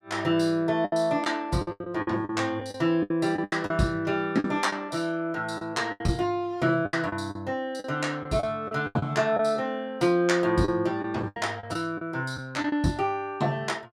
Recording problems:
packet loss; 10% of the sound replaced, filled with the last packet

